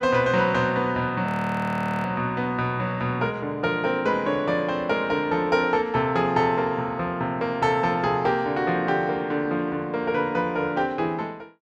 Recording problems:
frozen audio; at 1.5 s for 1 s

